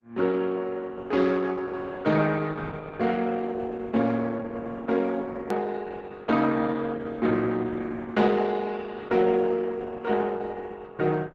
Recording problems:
lossy compression; Opus, log-spectral distance 4 dB, nothing above 13.1 kHz
hard cut with a click; at 5.5 s

